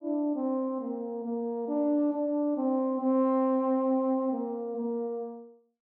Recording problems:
none

